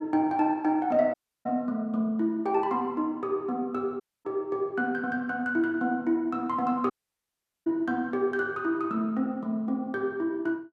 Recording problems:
dropout; at 1 s, at 4 s and at 7 s for 1 s

